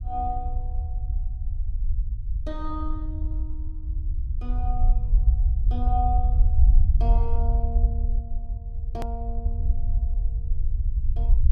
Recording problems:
low-frequency rumble; below 60 Hz, SNR -9 dB
click at an edit; at 9 s

